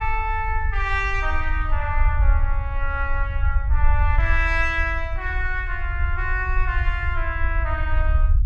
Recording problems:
rumble; below 64 Hz, SNR -1 dB

